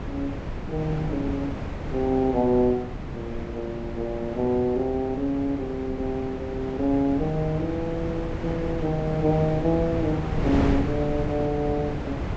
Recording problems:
treble missing; nothing above 8 kHz
wind noise; below 410 Hz, SNR 5 dB

